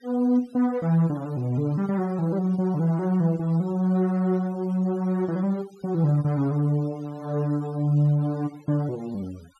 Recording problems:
denoising artefacts; signal-to-artefact ratio 27 dB

